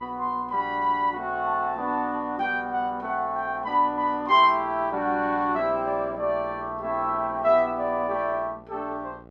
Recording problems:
hum; 60 Hz, harmonics up to 1.5 kHz, SNR 23 dB

